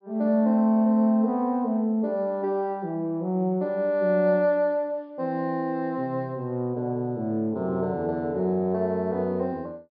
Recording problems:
low-pass filter; nothing above 5.5 kHz

